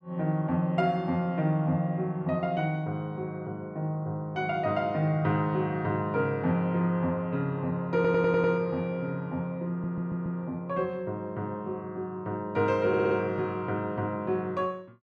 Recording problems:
stutter; at 8 s, at 9.5 s and at 13 s

